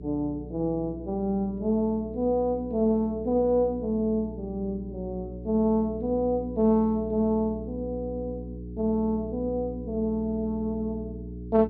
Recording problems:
treble missing; nothing above 5.5 kHz
hum; 60 Hz, harmonics up to 420 Hz, SNR 12 dB

